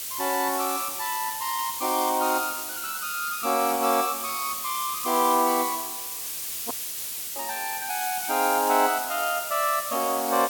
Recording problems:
background hiss; SNR 4 dB
audio cutting out; at 6.5 s for 0.5 s

